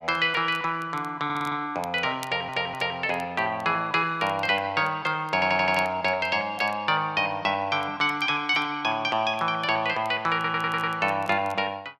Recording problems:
crackling; vinyl, SNR 27 dB
stutter; 4 times, first at 1 s

